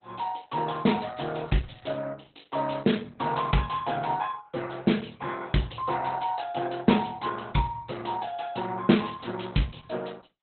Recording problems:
lossy compression; Opus, log-spectral distance 9 dB, nothing above 4 kHz
crackle; from 1 to 2 s; loose cable, SNR 27 dB

